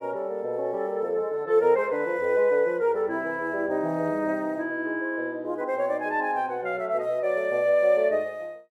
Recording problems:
none

